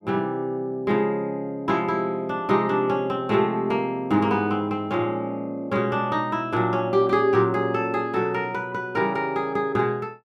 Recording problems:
none

